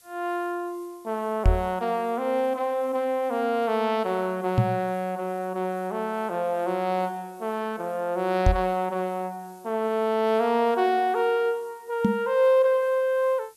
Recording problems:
background hiss; SNR 29 dB
knock on the microphone; 4 times, first at 1.5 s; peak +8 dB vs average level

